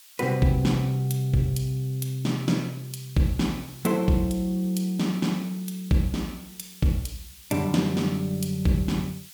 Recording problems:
hiss; SNR 20 dB

